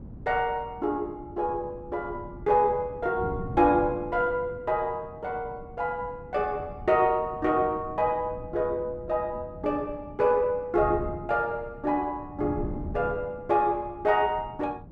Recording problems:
wind noise; below 230 Hz, SNR 14 dB

